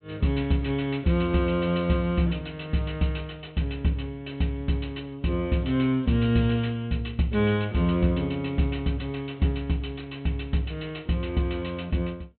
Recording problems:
treble missing; nothing above 4 kHz

